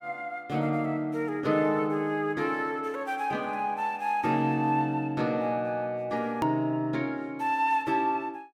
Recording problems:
hard cut with a click; at 6.5 s

